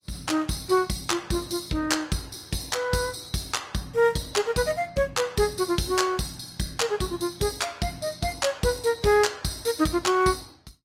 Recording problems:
lossy compression; Opus, log-spectral distance 5 dB, nothing above 16 kHz

